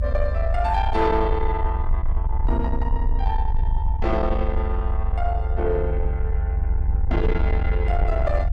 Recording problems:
distortion; soft clipping, signal-to-distortion ratio 12 dB
rumble; below 74 Hz, SNR -1 dB

